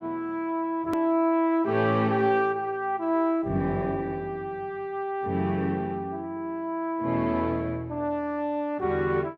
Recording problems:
edit click; at 1 s

